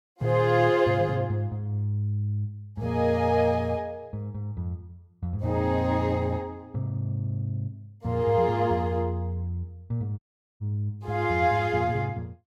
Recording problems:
dropout; at 10 s

